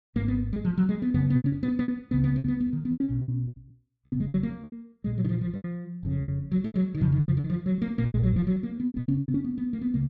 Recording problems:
packet loss; 18% of the sound replaced, filled with repeated pitch periods

